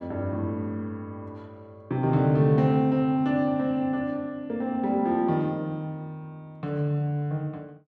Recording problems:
none

